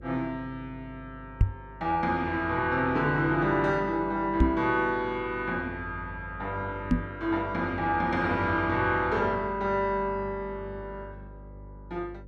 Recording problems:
hum; 50 Hz, harmonics up to 550 Hz, SNR 17 dB
knock on the microphone; at 1.5 s, at 4.5 s and at 7 s; peak +9 dB vs average level

